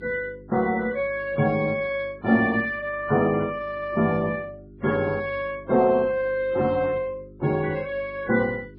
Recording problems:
codec artefacts; MP3, then Vorbis, log-spectral distance 2 dB, nothing above 4.5 kHz
electrical hum; 50 Hz, harmonics up to 400 Hz, SNR 22 dB

